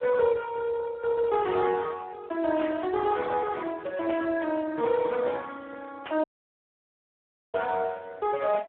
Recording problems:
telephone audio; 260 Hz to 3 kHz, Speex
static burst; at 2.5 s, at 4 s and at 6 s; peak -5 dB vs average level
audio cutting out; at 6 s for 1.5 s

